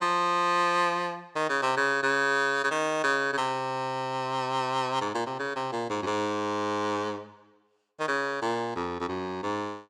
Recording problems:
none

